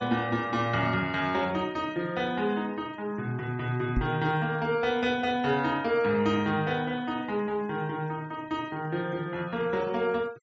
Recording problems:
low-pass filter; nothing above 8 kHz
denoising artefacts; signal-to-artefact ratio 25 dB
knock on the microphone; at 4 s; peak +4 dB vs average level

